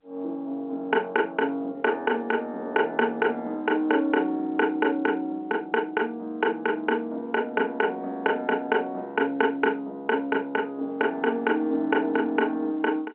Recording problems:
phone line; 220 Hz to 3.2 kHz, G.711

